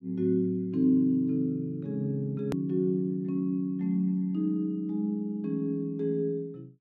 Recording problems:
edit click; at 2.5 s

